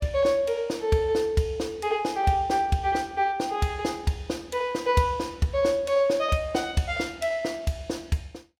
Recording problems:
none

